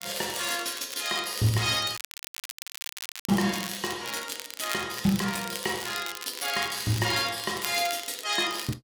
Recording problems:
crackle; vinyl, SNR 10 dB
dropout; at 2 s for 1.5 s

